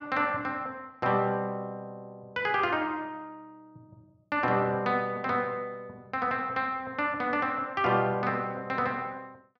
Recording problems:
none

